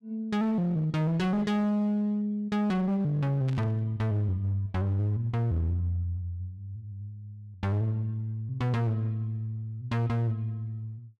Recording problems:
distortion; hard clipping, uneven, signal-to-distortion ratio 12 dB
burst of static; at 3.5 s; peak -13 dB vs average level

